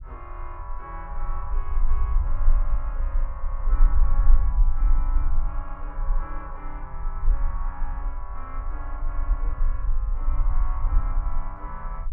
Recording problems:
rumble; below 40 Hz, strongest tone 22 Hz, SNR -12 dB

